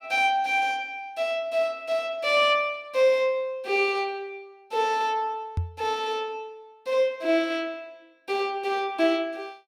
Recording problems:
knock on the microphone; at 5.5 s; peak +1 dB vs average level

